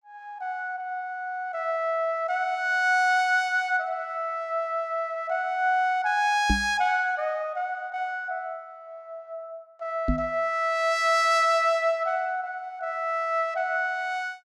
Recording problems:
microphone bump; at 6.5 s and at 10 s; peak +4 dB vs average level

